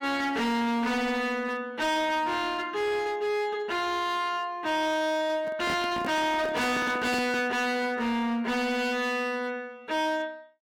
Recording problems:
distorted audio; hard clipping, signal-to-distortion ratio 7 dB
handling noise; from 5.5 to 7.5 s; peak -1 dB vs average level

